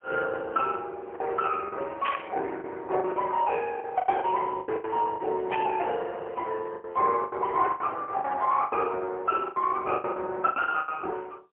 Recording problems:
phone line; 340 Hz to 2.6 kHz, AMR-NB, then MP3
lost packets; 12% of the sound replaced, filled with the last packet
static burst; at 2 s and at 5.5 s; peak +1 dB vs average level

